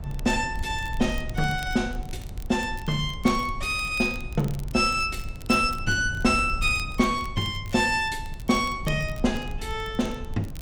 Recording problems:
low-frequency rumble; below 90 Hz, SNR 11 dB
crackle; vinyl, SNR 23 dB

